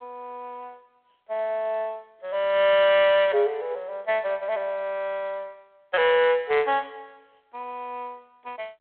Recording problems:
phone line; 300 Hz to 3.5 kHz, G.726

